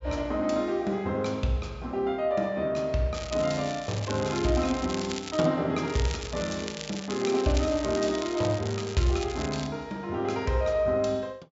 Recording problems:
treble missing; nothing above 8 kHz
crackling; from 3 to 5.5 s and from 6 to 9.5 s; loose cable, SNR 11 dB

